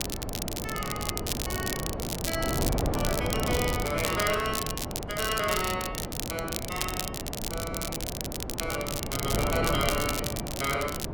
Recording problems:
wind on the microphone; below 560 Hz, SNR 1 dB
crackling; vinyl, SNR 2 dB

